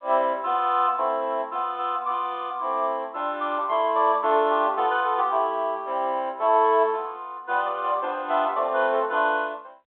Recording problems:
telephone audio; 320 Hz to 3.8 kHz, G.726

